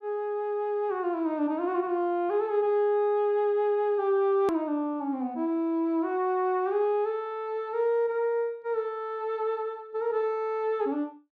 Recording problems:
edit click; at 4.5 s

